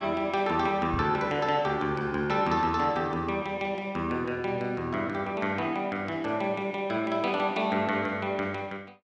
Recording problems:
knock on the microphone; at 1 s; peak -1 dB vs average level

